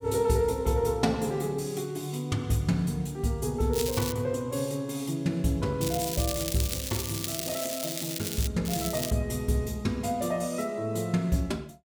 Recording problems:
crackling; at 3.5 s, from 6 to 8.5 s and at 8.5 s; loose cable, SNR 4 dB

